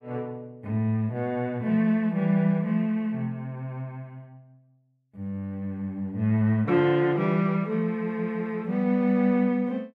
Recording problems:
none

